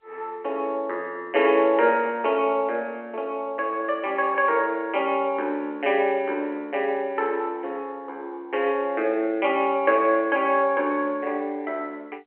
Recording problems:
telephone audio; 260 Hz to 3.1 kHz, G.711

